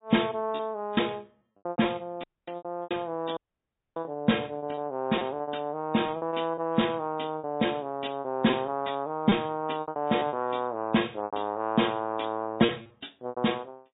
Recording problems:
treble missing; nothing above 3.8 kHz
lossy codec; MP3, log-spectral distance 5 dB
packet loss; 11% of the sound replaced, filled with repeated pitch periods
audio cutting out; at 2 s and at 3.5 s for 0.5 s

